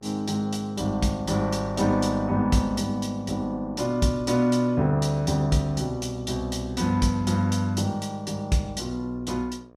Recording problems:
mains hum; 60 Hz, harmonics up to 1.7 kHz, SNR 29 dB

